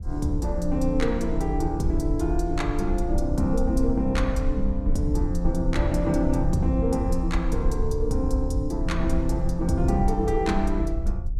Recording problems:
low-frequency rumble; below 62 Hz, SNR 3 dB

